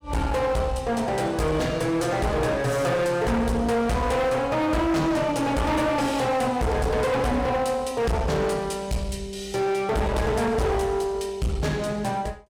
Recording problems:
distortion; hard clipping, uneven, signal-to-distortion ratio 6 dB

